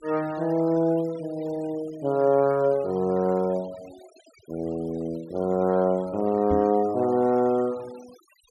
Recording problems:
noise reduction artefacts; signal-to-artefact ratio 24 dB
knock on the microphone; at 6.5 s; peak -1 dB vs average level

